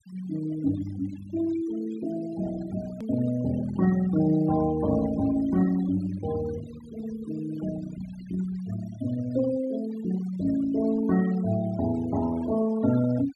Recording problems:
denoising artefacts; signal-to-artefact ratio 16 dB
hard cut with a click; at 3 s

